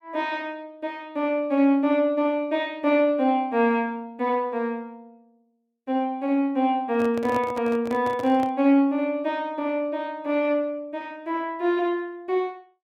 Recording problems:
handling noise; from 7 to 8.5 s; peak -5 dB vs average level

